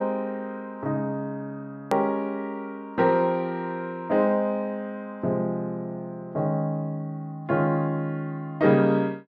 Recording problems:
hard cut with a click; at 2 s

